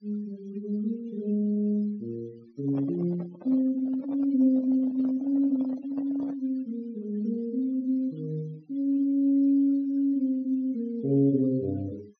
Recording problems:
low-pass filter; nothing above 6.2 kHz
denoising artefacts; signal-to-artefact ratio 27 dB
microphone handling noise; from 2.5 to 6.5 s; peak -10 dB vs average level

